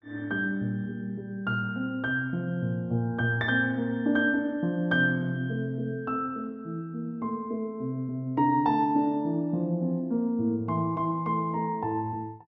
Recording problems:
none

